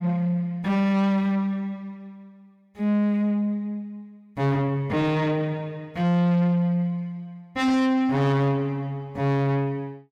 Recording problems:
distorted audio; soft clipping, signal-to-distortion ratio 10 dB

